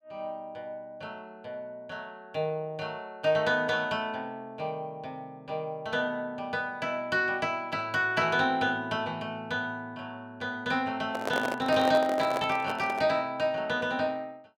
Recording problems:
handling noise; from 11 to 13 s; peak +3 dB vs average level

